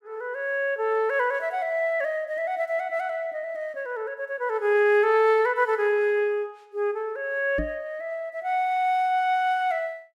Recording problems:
microphone bump; at 7.5 s; peak -2 dB vs average level

